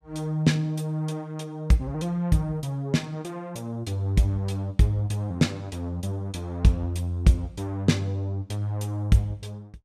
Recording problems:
none

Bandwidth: 15 kHz